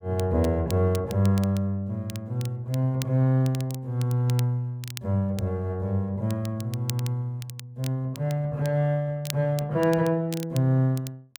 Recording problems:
crackling; vinyl, SNR 17 dB

